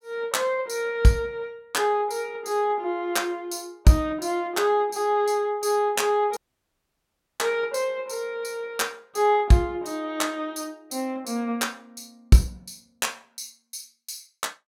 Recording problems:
audio cutting out; at 6.5 s for 1 s

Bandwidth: 16.5 kHz